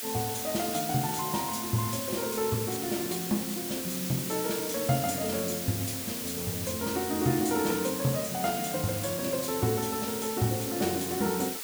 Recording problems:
background hiss; slope +1 dB per octave, SNR 3 dB

